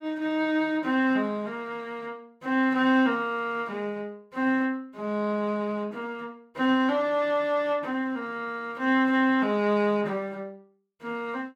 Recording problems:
none

